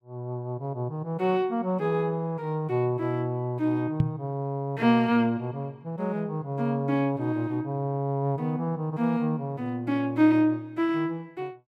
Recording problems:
microphone thump; at 4 s; peak +7 dB vs average level

